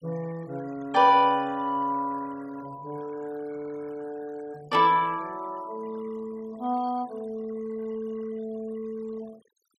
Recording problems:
denoising artefacts; signal-to-artefact ratio 23 dB

